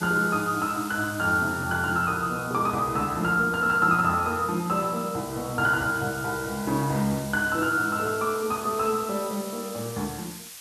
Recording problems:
hiss; slope +3 dB per octave, SNR 15 dB

